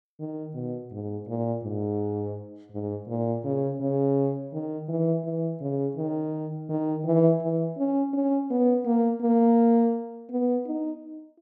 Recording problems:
none

